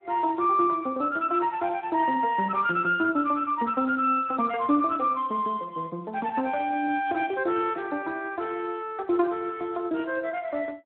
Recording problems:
telephone audio; 220 Hz to 3.1 kHz, Speex

